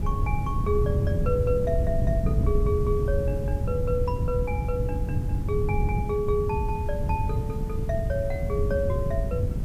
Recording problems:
background hiss; slope -4 dB per octave, SNR 22 dB
wind on the microphone; below 130 Hz, SNR -2 dB

